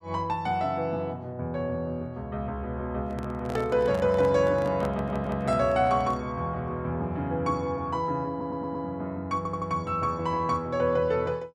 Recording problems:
microphone handling noise; from 3 to 6.5 s; peak -3 dB vs average level
stutter; at 5 s, at 8.5 s and at 9.5 s

